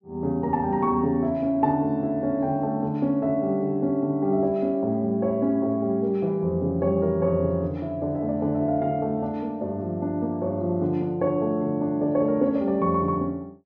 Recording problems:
treble cut off; nothing above 6.6 kHz

